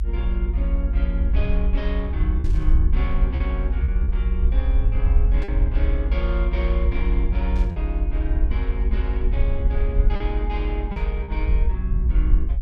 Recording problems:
rumble; below 60 Hz, SNR -9 dB
lost packets; 3% of the sound replaced, filled with repeated pitch periods
burst of static; 4 times, first at 2.5 s; peak -8 dB vs average level

